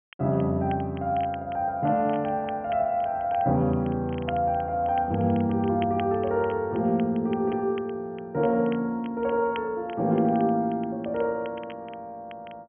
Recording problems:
low-pass filter; nothing above 3.2 kHz
crackle; vinyl, SNR 24 dB

